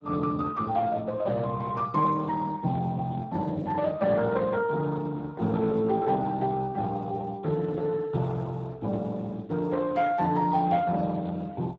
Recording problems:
codec artefacts; Speex, log-spectral distance 3 dB

